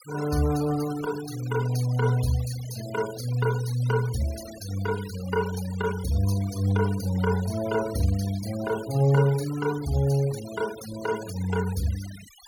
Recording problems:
denoising artefacts; signal-to-artefact ratio 15 dB

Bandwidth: 18 kHz